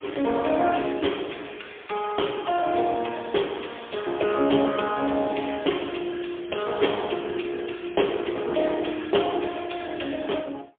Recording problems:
phone line; 240 Hz to 3.4 kHz, AMR-NB, then MP3

